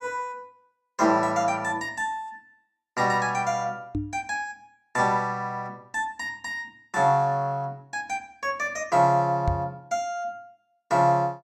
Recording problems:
microphone thump; at 4 s and at 9.5 s; peak +3 dB vs average level

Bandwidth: 13 kHz